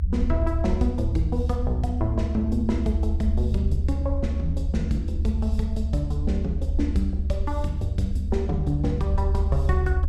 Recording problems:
hum; 60 Hz, harmonics up to 300 Hz, SNR 21 dB
rumble; below 74 Hz, strongest tone 74 Hz, SNR -1 dB

